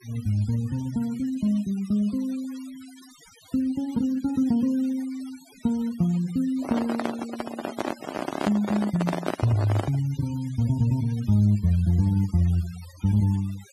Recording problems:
noise reduction artefacts; signal-to-artefact ratio 19 dB
handling noise; from 6.5 to 10 s; peak +2 dB vs average level

